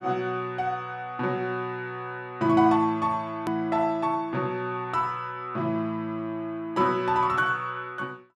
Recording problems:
hard cut with a click; at 3.5 s

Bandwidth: 13 kHz